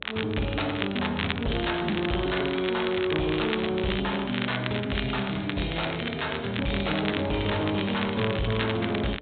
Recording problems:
treble cut off; nothing above 4 kHz
distortion; soft clipping, signal-to-distortion ratio 10 dB
hum; 60 Hz, harmonics up to 600 Hz, SNR 24 dB
crackling; vinyl, SNR 7 dB

